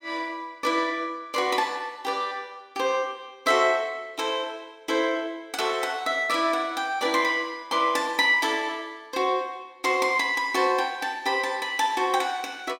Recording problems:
none

